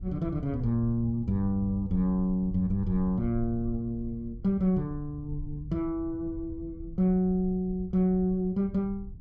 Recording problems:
low-frequency rumble; below 82 Hz, SNR 13 dB

